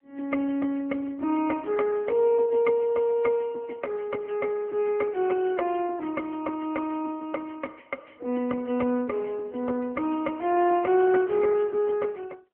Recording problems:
phone line; 190 Hz to 3.2 kHz, AMR-NB

